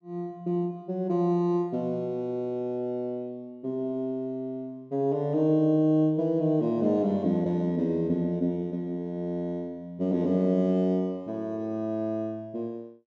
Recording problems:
none

